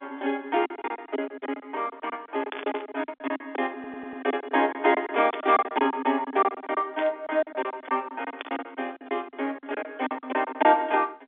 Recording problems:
phone line; 220 Hz to 3.6 kHz, G.711
lost packets; 16% of the sound replaced, filled with silence
static burst; 4 times, first at 2.5 s; peak -3 dB vs average level
audio stuttering; at 3.5 s

